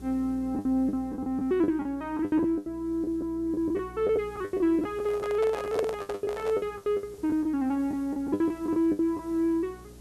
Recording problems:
hum; 60 Hz, harmonics up to 420 Hz, SNR 21 dB
background hiss; SNR 27 dB
lost packets; 16% of the sound replaced, filled with the last packet
handling noise; from 5 to 6.5 s; peak 0 dB vs average level

